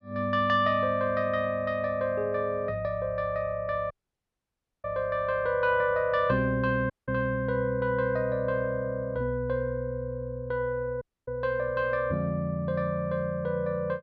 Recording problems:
dropout; at 4 s for 1 s, at 7 s and at 11 s

